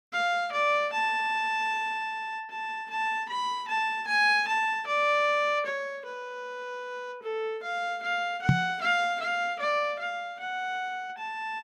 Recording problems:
microphone thump; at 8.5 s; peak +9 dB vs average level

